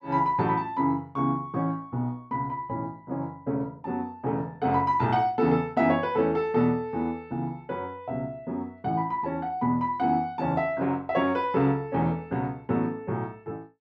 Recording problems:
none

